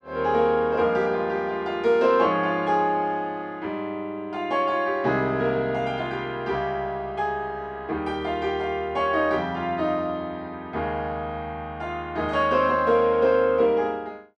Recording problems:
none

